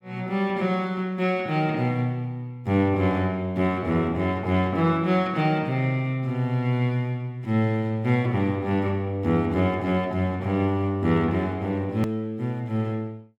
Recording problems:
edit click; at 12 s

